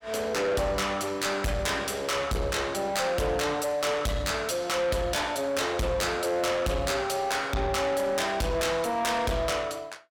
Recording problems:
distorted audio; soft clipping, signal-to-distortion ratio 7 dB

